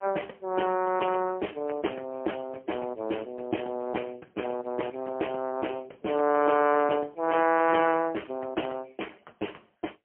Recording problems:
phone line; 260 Hz to 2.6 kHz, AMR-NB, then MP3

